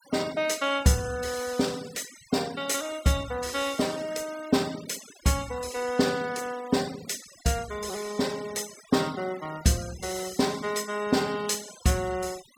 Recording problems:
denoising artefacts; signal-to-artefact ratio 17 dB

